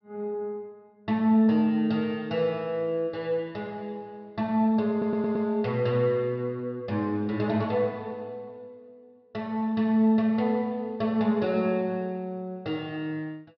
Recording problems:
treble missing; nothing above 5.5 kHz
stutter; at 5 s

